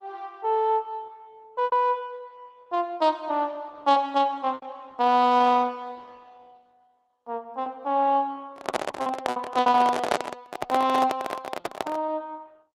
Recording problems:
lossy codec; Opus, log-spectral distance 2 dB
lost packets; 6% of the sound replaced, filled with repeated pitch periods
microphone handling noise; from 8.5 to 12 s; peak +5 dB vs average level

